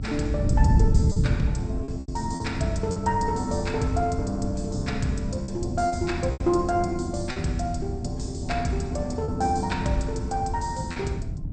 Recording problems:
lossy compression; MP2, log-spectral distance 2 dB, nothing above 8.5 kHz
hum; 50 Hz, harmonics up to 1 kHz, SNR 21 dB
wind on the microphone; below 140 Hz, SNR 2 dB
packet loss; 5% of the sound replaced, filled with repeated pitch periods

